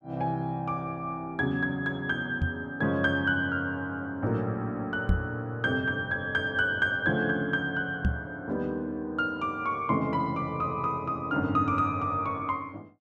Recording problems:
knock on the microphone; at 2.5 s, at 5 s and at 8 s; peak +6 dB vs average level

